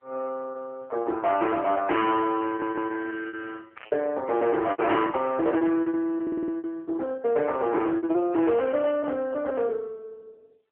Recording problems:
telephone audio; 300 Hz to 2.9 kHz, AMR-NB
distortion; hard clipping, uneven, signal-to-distortion ratio 12 dB
packet loss; 10% of the sound replaced, filled with repeated pitch periods
stutter; at 2.5 s and at 6 s
burst of static; at 4 s; peak -12 dB vs average level

